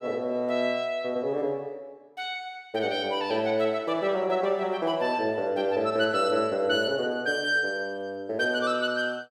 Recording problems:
none

